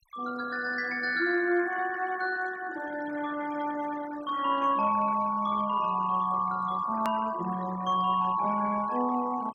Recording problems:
denoising artefacts; signal-to-artefact ratio 18 dB
click at an edit; at 7 s

